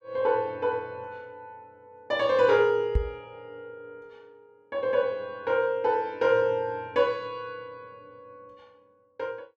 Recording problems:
microphone thump; at 3 s; peak +5 dB vs average level

